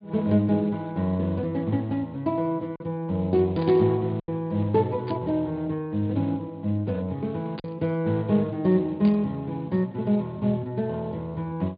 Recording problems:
treble missing; nothing above 4.2 kHz
codec artefacts; Speex, log-spectral distance 2 dB
packet loss; 1.4% of the sound replaced, filled with silence
burst of static; 4 times, first at 3.5 s; peak -10 dB vs average level

